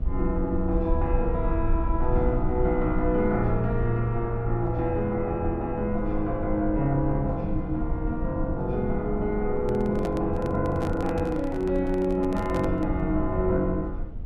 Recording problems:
low-frequency rumble; below 68 Hz, SNR 7 dB
handling noise; from 9.5 to 13 s; peak -4 dB vs average level

